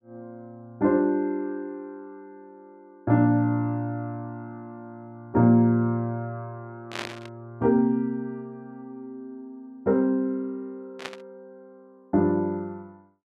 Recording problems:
static burst; at 7 s and at 11 s; peak -4 dB vs average level

